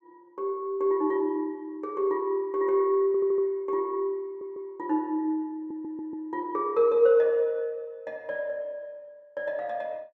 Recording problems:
audio stuttering; at 3 s, at 4.5 s and at 5.5 s

